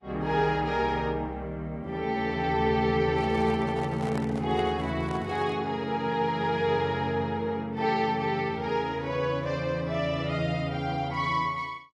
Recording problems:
lossy compression; AAC, log-spectral distance 2 dB
microphone handling noise; from 3 to 5.5 s; peak -5 dB vs average level

